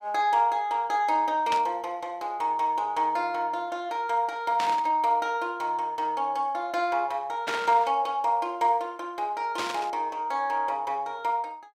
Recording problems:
static burst; 4 times, first at 1.5 s; peak -1 dB vs average level

